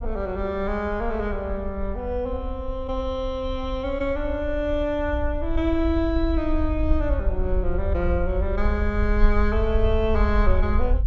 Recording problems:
treble missing; nothing above 8 kHz
low-frequency rumble; below 60 Hz, SNR 2 dB

